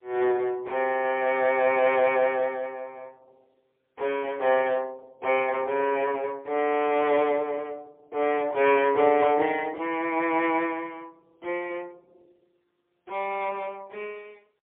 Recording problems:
telephone audio; 320 Hz to 3.5 kHz, AMR-NB, then MP3

